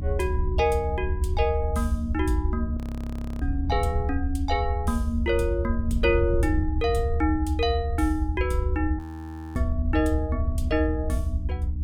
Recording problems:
hum; 60 Hz, harmonics up to 300 Hz, SNR 13 dB
low-frequency rumble; below 78 Hz, SNR 2 dB
wind on the microphone; below 88 Hz, SNR 8 dB
audio freezing; at 3 s for 0.5 s and at 9 s for 0.5 s

